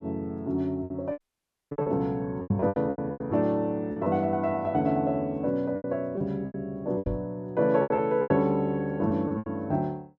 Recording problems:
lost packets; 12% of the sound replaced, filled with repeated pitch periods
audio cutting out; at 1 s for 0.5 s
microphone bump; at 2.5 s and at 7 s; peak +5 dB vs average level

